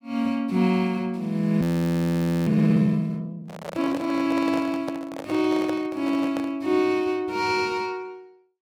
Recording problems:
frozen audio; at 1.5 s for 1 s
handling noise; from 3.5 to 6.5 s; peak -4 dB vs average level

